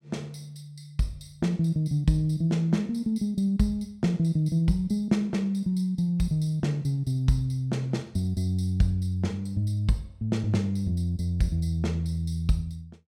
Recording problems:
none

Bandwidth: 16 kHz